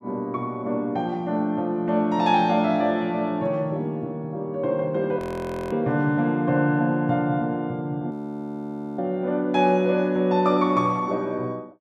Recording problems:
audio freezing; at 5 s for 0.5 s and at 8 s for 1 s

